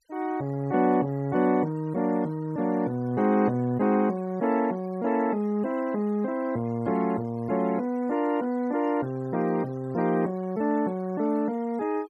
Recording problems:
denoising artefacts; signal-to-artefact ratio 24 dB

